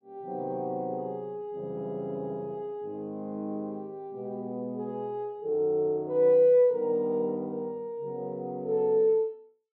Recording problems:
none

